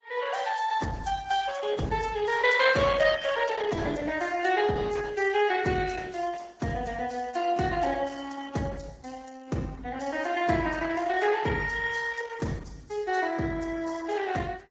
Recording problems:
codec artefacts; Vorbis, then Opus, log-spectral distance 4 dB, nothing above 7.3 kHz

